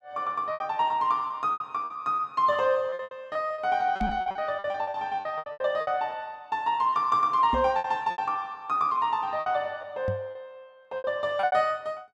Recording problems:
lost packets; 13% of the sound replaced, filled with repeated pitch periods
knock on the microphone; at 4 s, at 7.5 s and at 10 s; peak 0 dB vs average level

